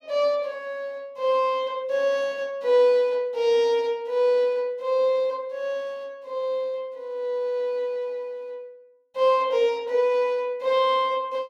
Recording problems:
none

